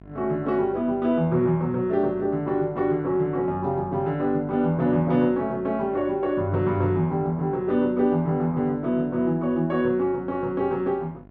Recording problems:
mains hum; 50 Hz, harmonics up to 1.4 kHz, SNR 24 dB

